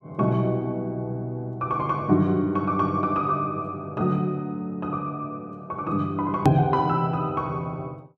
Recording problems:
hard cut with a click; at 6.5 s

